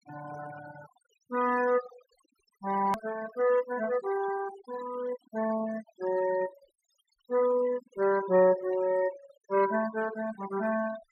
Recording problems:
denoising artefacts; signal-to-artefact ratio 14 dB
click at an edit; at 3 s

